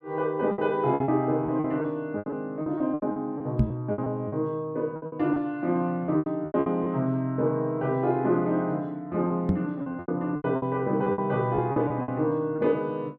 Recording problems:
packet loss; 12% of the sound replaced, filled with repeated pitch periods
microphone thump; at 3.5 s and at 9.5 s; peak +8 dB vs average level

